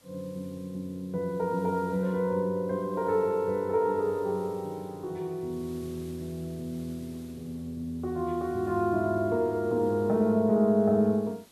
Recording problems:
hiss; slope -2 dB per octave, SNR 27 dB

